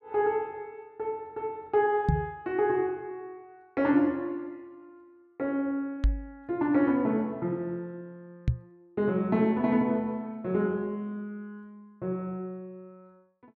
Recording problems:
knock on the microphone; at 2 s, at 6 s and at 8.5 s; peak +8 dB vs average level

